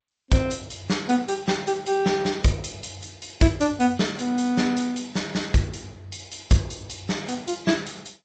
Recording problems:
lossy compression; MP3, then G.722, log-spectral distance 8 dB, nothing above 7.6 kHz

